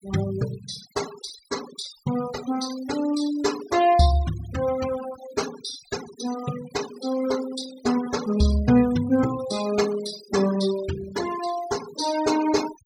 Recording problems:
denoising artefacts; signal-to-artefact ratio 12 dB

